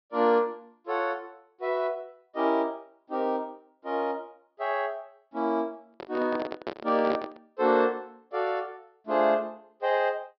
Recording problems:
treble cut off; nothing above 5.5 kHz
handling noise; from 6 to 7.5 s; peak 0 dB vs average level

